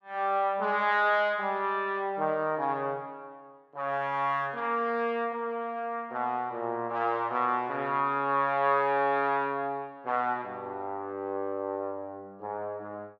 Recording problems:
none

